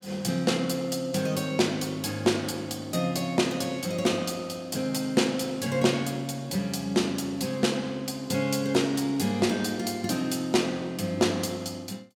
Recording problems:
none

